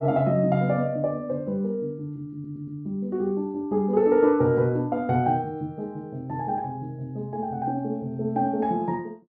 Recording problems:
stutter; at 2.5 s

